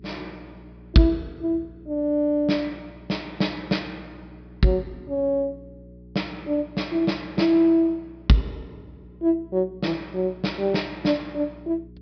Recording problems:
treble cut off; nothing above 5.5 kHz
mains hum; 60 Hz, harmonics up to 420 Hz, SNR 22 dB

